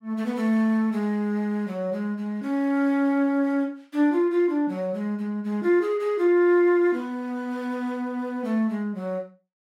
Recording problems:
none

